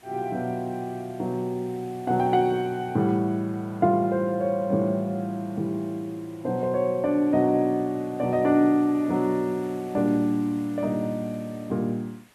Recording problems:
hiss; SNR 27 dB

